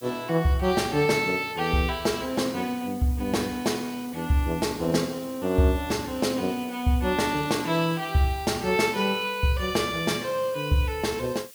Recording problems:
hiss; SNR 20 dB
crackle; at 7.5 s; loose cable, SNR 29 dB

